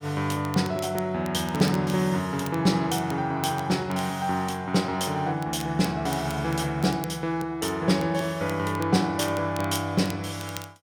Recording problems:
crackling; vinyl, SNR 18 dB

